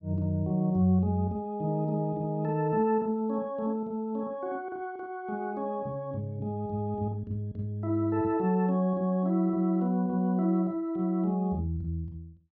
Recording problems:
none

